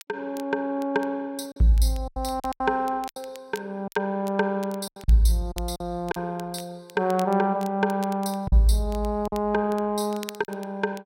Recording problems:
crackle; vinyl, SNR 21 dB
lost packets; 7% of the sound replaced, filled with silence

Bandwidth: 16 kHz